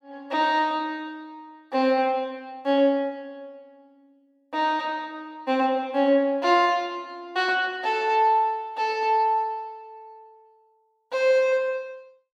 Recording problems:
none

